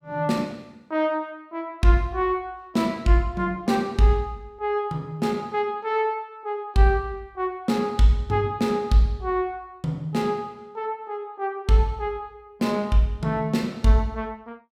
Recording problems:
none

